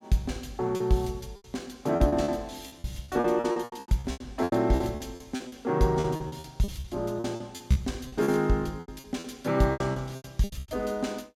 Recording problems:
lost packets; 18% of the sound replaced, filled with repeated pitch periods

